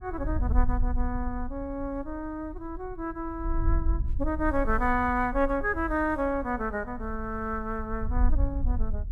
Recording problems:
wind noise; below 60 Hz, SNR 3 dB

